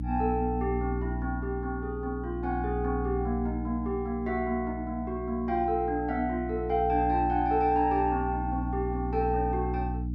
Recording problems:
electrical hum; 60 Hz, harmonics up to 300 Hz, SNR 6 dB

